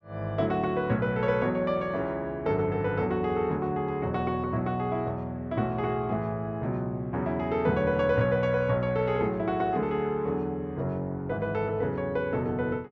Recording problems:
treble cut off; nothing above 8 kHz

